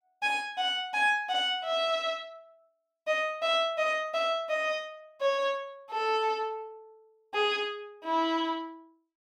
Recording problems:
none

